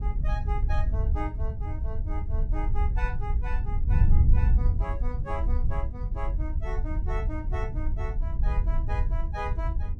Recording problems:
wind on the microphone; below 76 Hz, SNR -10 dB

